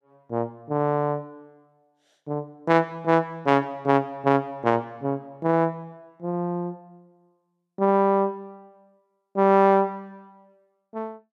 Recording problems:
none

